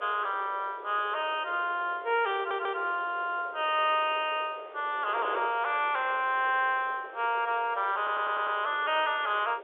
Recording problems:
telephone audio; 340 Hz to 3.6 kHz, G.711
wind noise; below 890 Hz, SNR 17 dB
audio stuttering; at 2.5 s and at 8 s

